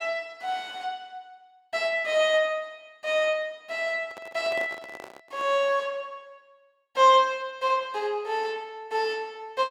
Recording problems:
handling noise; from 4 to 5.5 s; peak -8 dB vs average level

